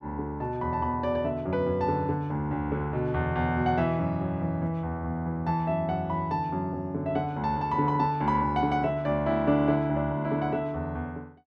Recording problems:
none

